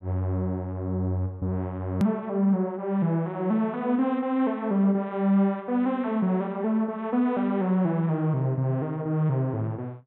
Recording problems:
low-pass filter; nothing above 4 kHz
edit click; at 2 s

